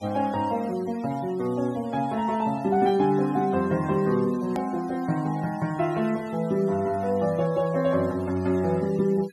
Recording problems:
noise reduction artefacts; signal-to-artefact ratio 22 dB
hard cut with a click; at 4.5 s

